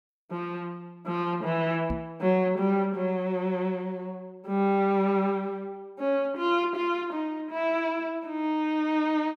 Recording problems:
knock on the microphone; at 2 s; peak -2 dB vs average level

